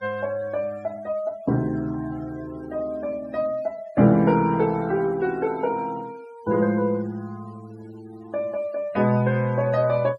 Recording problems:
noise reduction artefacts; signal-to-artefact ratio 25 dB

